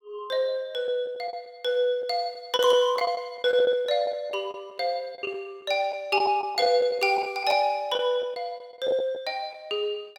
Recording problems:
lost packets; 8% of the sound replaced, filled with the last packet

